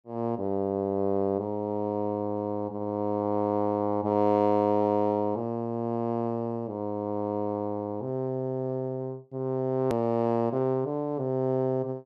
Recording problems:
hard cut with a click; at 10 s

